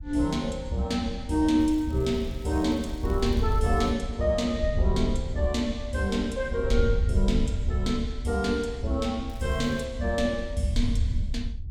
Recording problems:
wind noise; below 76 Hz, SNR 5 dB
crackling; from 1.5 to 4 s and at 9.5 s; loose cable, SNR 26 dB

